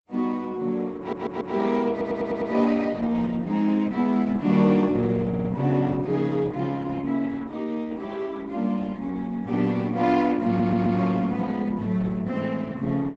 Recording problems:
lossy compression; Opus, log-spectral distance 3 dB, nothing above 7.8 kHz
stutter; 4 times, first at 1 s

